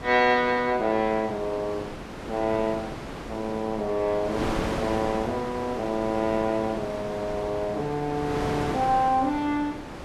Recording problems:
wind noise; below 1.2 kHz, SNR 8 dB

